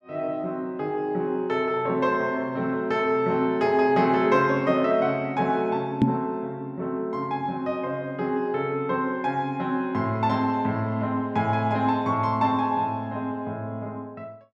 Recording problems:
knock on the microphone; at 6 s; peak +9 dB vs average level

